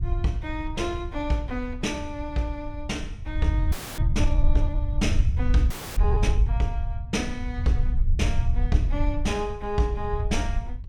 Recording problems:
low-frequency rumble; below 74 Hz, SNR -1 dB
audio freezing; at 3.5 s and at 5.5 s

